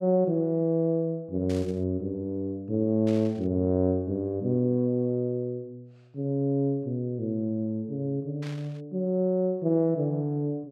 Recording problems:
static burst; at 1.5 s, at 3 s and at 8.5 s; peak -12 dB vs average level

